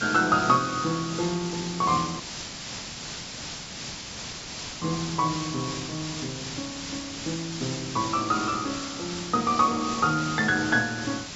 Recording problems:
treble missing; nothing above 8 kHz
hiss; slope 0 dB per octave, SNR 8 dB
dropout; at 2 s for 2.5 s

